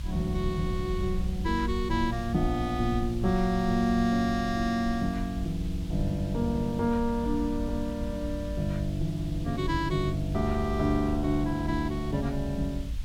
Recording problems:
background hiss; slope 0 dB per octave, SNR 20 dB
low-frequency rumble; below 70 Hz, SNR 8 dB

